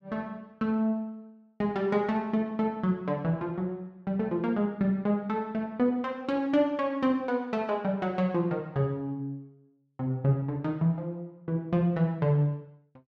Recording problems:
none

